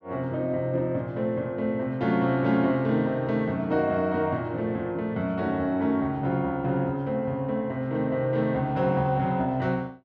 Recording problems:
none

